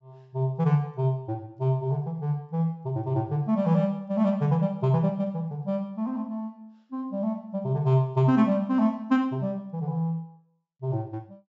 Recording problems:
low-pass filter; nothing above 8 kHz

